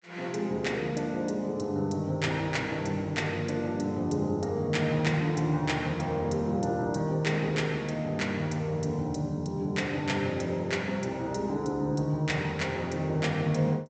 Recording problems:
treble cut off; nothing above 8 kHz

